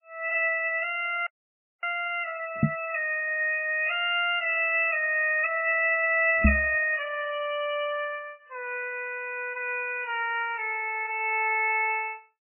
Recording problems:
lossy compression; MP3, log-spectral distance 4 dB, nothing above 2.7 kHz
frozen audio; at 1.5 s for 0.5 s
knock on the microphone; at 2.5 s and at 6.5 s; peak +8 dB vs average level

